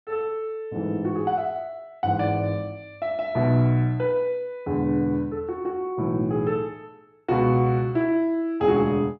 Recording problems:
none

